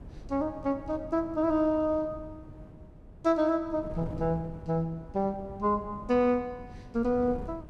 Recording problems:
wind noise; below 220 Hz, SNR 16 dB

